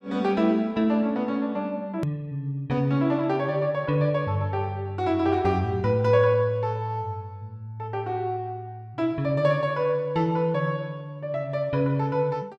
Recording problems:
click at an edit; at 2 s

